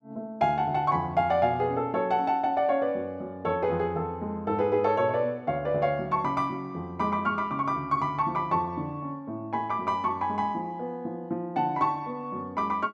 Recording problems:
none

